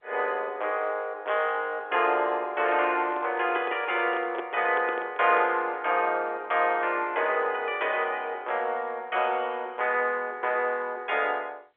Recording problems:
phone line; 320 Hz to 3.5 kHz, G.711
handling noise; from 3 to 5.5 s; peak -3 dB vs average level

